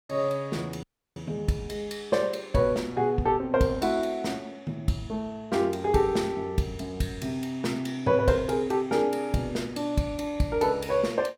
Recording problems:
audio cutting out; at 1 s

